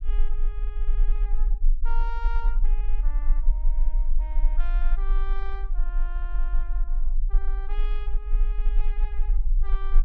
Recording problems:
rumble; below 36 Hz, strongest tone 22 Hz, SNR -16 dB

